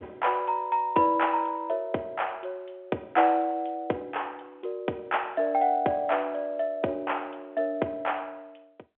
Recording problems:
phone line; 240 Hz to 3.3 kHz, G.711

